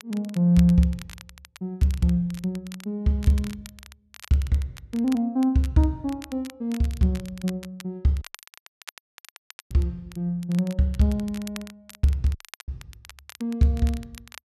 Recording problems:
crackling; vinyl, SNR 21 dB
audio cutting out; at 8 s for 1.5 s and at 12 s

